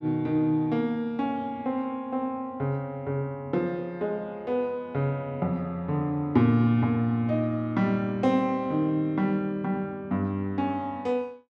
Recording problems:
none

